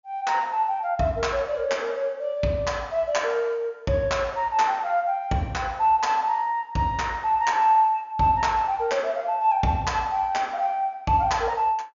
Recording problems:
low-pass filter; nothing above 7.1 kHz

